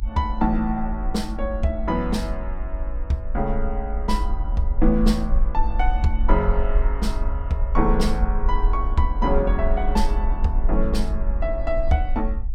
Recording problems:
rumble; below 48 Hz, SNR 1 dB

